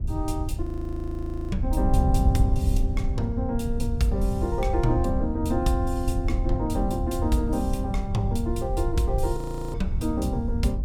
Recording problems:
wind noise; below 88 Hz, SNR 0 dB
audio freezing; at 0.5 s for 1 s and at 9.5 s

